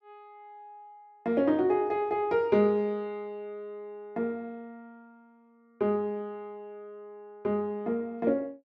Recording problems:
none

